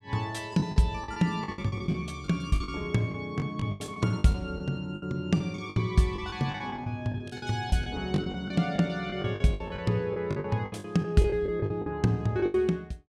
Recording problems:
lost packets; 15% of the sound replaced, filled with the last packet

